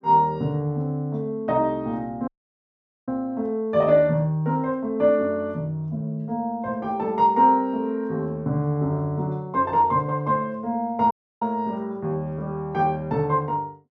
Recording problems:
audio cutting out; at 2.5 s for 1 s and at 11 s

